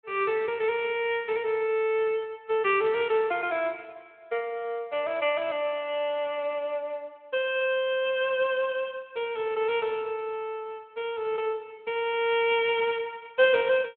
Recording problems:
telephone audio; 340 Hz to 3.5 kHz, Speex

